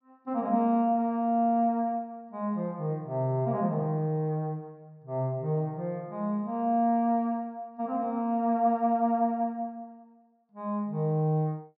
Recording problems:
treble missing; nothing above 5.8 kHz

